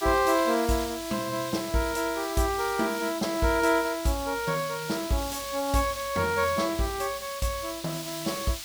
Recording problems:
hiss; slope +4 dB per octave, SNR 10 dB

